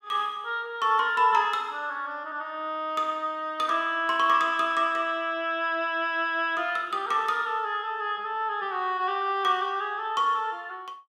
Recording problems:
none

